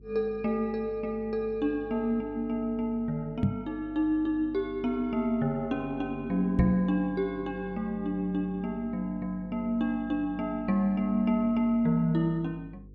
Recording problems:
electrical hum; 50 Hz, harmonics up to 500 Hz, SNR 21 dB
knock on the microphone; at 3.5 s and at 6.5 s; peak +7 dB vs average level

